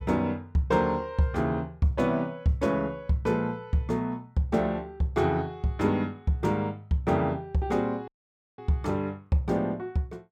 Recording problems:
audio cutting out; at 8 s for 0.5 s

